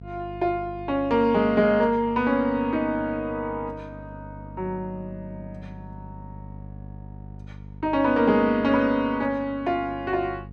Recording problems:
hum; 50 Hz, harmonics up to 500 Hz, SNR 18 dB

